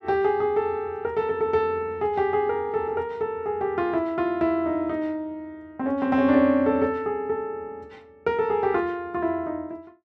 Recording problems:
none

